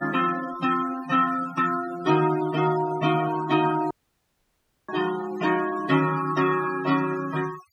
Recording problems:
denoising artefacts; signal-to-artefact ratio 15 dB
audio cutting out; at 4 s for 1 s

